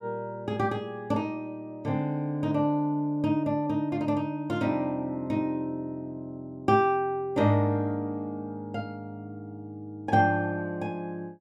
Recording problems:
none

